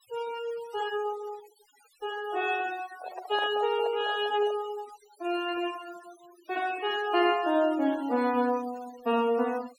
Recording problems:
noise reduction artefacts; signal-to-artefact ratio 19 dB
microphone handling noise; from 3 to 4.5 s; peak -6 dB vs average level

